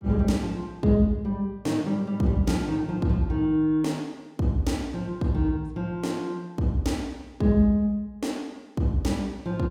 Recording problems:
none

